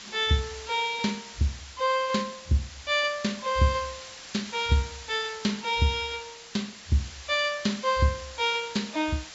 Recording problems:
treble cut off; nothing above 7.6 kHz
lossy codec; Vorbis, log-spectral distance 2 dB
hiss; slope +1 dB per octave, SNR 14 dB

